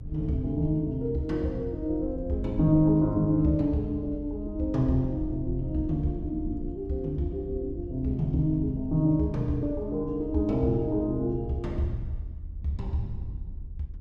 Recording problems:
rumble; below 78 Hz, SNR 11 dB

